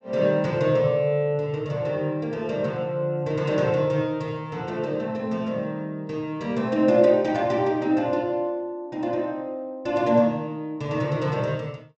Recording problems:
treble missing; nothing above 8 kHz

